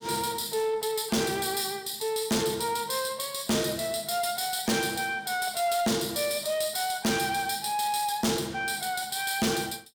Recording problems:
distortion; soft clipping, signal-to-distortion ratio 6 dB

